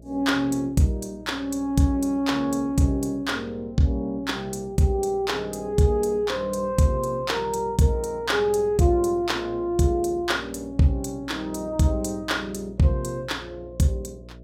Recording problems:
hum; 60 Hz, harmonics up to 660 Hz, SNR 21 dB

